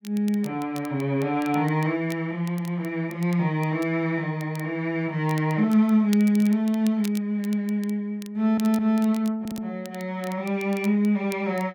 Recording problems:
crackling; vinyl, SNR 22 dB
audio stuttering; at 8.5 s and at 9.5 s

